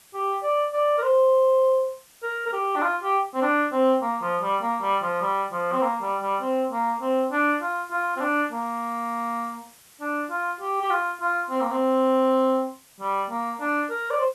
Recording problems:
background hiss; slope 0 dB per octave, SNR 27 dB

